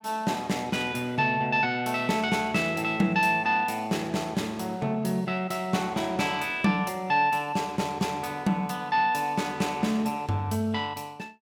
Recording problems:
none

